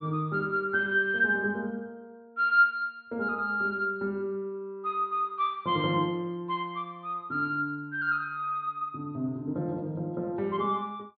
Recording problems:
low-pass filter; nothing above 4.5 kHz

